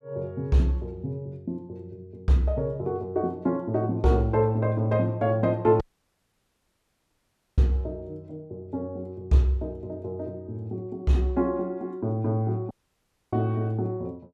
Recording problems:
dropout; at 6 s for 2 s and at 13 s for 0.5 s

